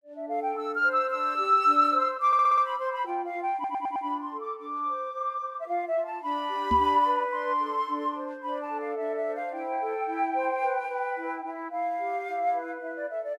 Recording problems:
audio stuttering; at 2.5 s and at 3.5 s
microphone thump; at 6.5 s; peak 0 dB vs average level

